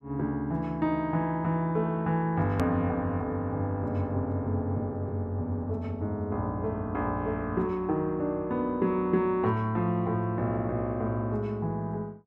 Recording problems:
click at an edit; at 2.5 s

